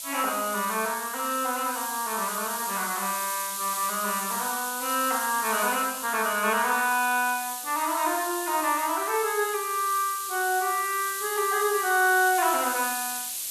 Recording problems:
background hiss; SNR 5 dB

